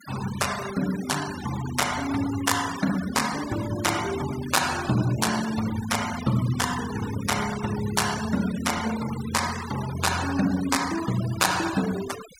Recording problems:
noise reduction artefacts; signal-to-artefact ratio 10 dB

